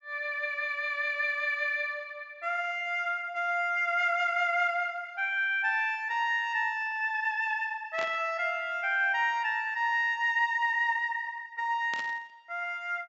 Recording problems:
treble cut off; nothing above 8 kHz
static burst; at 8 s and at 12 s; peak -6 dB vs average level

